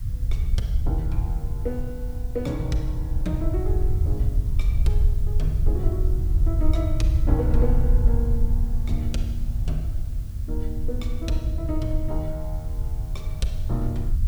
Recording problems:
hiss; SNR 20 dB
rumble; below 74 Hz, SNR -6 dB

